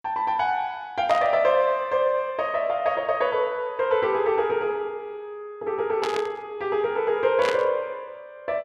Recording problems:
burst of static; at 1 s, at 6 s and at 7.5 s; peak -2 dB vs average level

